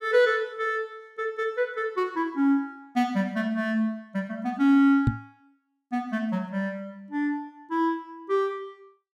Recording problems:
knock on the microphone; at 5 s; peak +7 dB vs average level

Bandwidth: 15 kHz